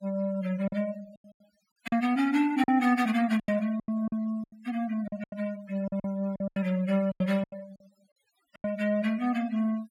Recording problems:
noise reduction artefacts; signal-to-artefact ratio 22 dB
lost packets; 12% of the sound replaced, filled with silence

